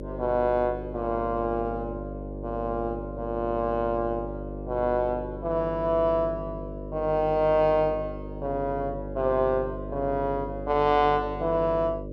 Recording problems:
hum; 50 Hz, harmonics up to 600 Hz, SNR 10 dB

